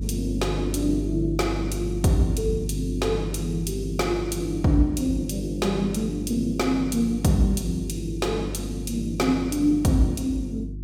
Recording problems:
hum; 50 Hz, harmonics up to 350 Hz, SNR 8 dB

